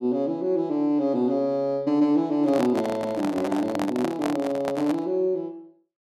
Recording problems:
handling noise; from 2.5 to 5 s; peak -1 dB vs average level

